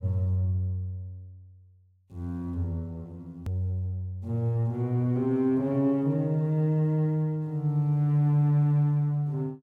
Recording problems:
edit click; at 3.5 s

